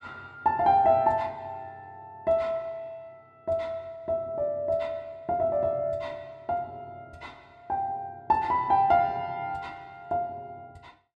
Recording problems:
none

